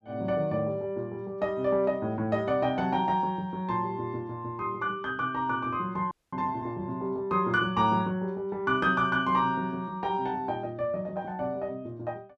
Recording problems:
audio freezing; at 6 s

